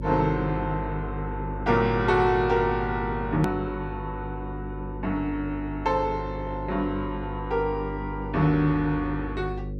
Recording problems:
mains hum; 50 Hz, harmonics up to 550 Hz, SNR 8 dB
edit click; at 3.5 s

